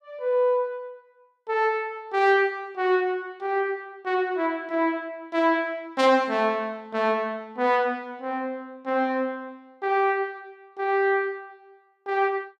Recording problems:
none

